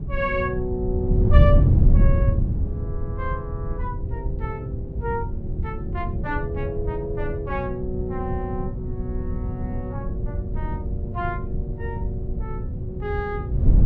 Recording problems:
wind noise; below 120 Hz, SNR -5 dB

